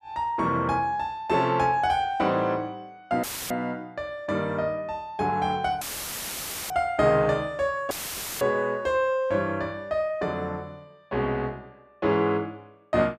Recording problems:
dropout; at 3 s, at 6 s for 1 s and at 8 s for 0.5 s; filled with static

